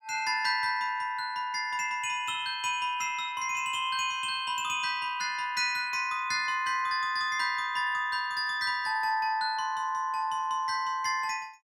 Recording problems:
none

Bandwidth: 16.5 kHz